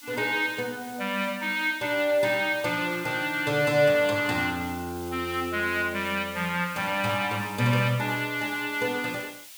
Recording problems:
hiss; slope +4 dB per octave, SNR 18 dB

